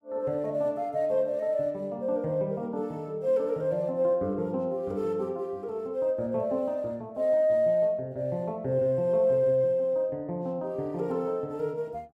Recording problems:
none

